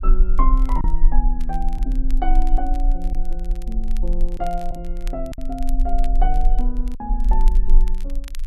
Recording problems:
low-frequency rumble; below 34 Hz, strongest tone 20 Hz, SNR -6 dB
crackling; vinyl, SNR 19 dB
lost packets; 2% of the sound replaced, filled with silence

